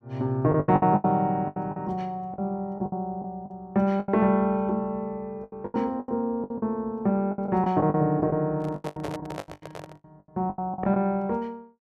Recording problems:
packet loss; 15% of the sound replaced, filled with the last packet
handling noise; from 8.5 to 10 s; peak -5 dB vs average level

